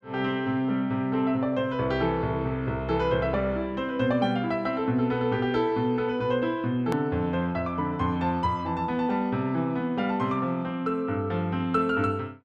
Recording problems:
hard cut with a click; at 7 s

